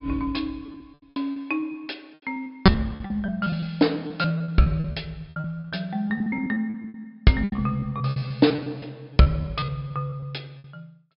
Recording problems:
treble cut off; nothing above 5.5 kHz
packet loss; 17% of the sound replaced, filled with repeated pitch periods

